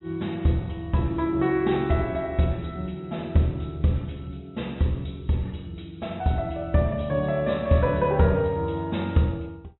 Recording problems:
low-pass filter; nothing above 3.9 kHz
lossy codec; MP3, log-spectral distance 2 dB

